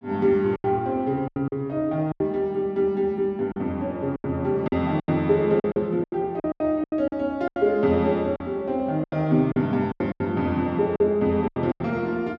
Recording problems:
packet loss; 12% of the sound replaced, filled with silence

